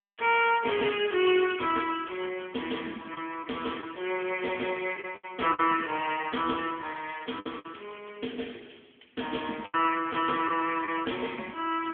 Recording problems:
telephone audio; 280 Hz to 3.3 kHz, AMR-NB
lost packets; 4% of the sound replaced, filled with the last packet

